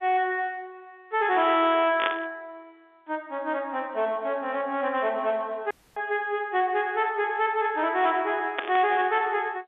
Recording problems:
telephone audio; 240 Hz to 3.7 kHz, G.711
distorted audio; soft clipping, signal-to-distortion ratio 12 dB
static burst; at 2 s and at 8.5 s; peak +2 dB vs average level
audio cutting out; at 5.5 s

